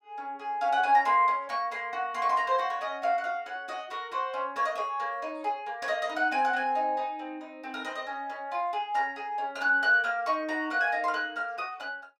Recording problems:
none

